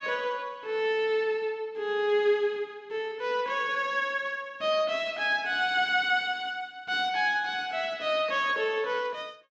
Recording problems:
none

